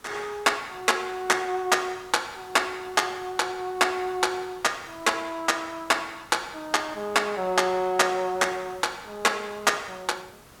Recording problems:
hiss; SNR 24 dB

